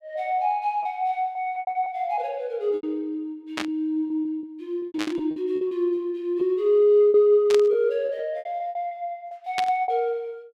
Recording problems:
lost packets; 13% of the sound replaced, filled with repeated pitch periods
burst of static; 4 times, first at 3.5 s; peak 0 dB vs average level

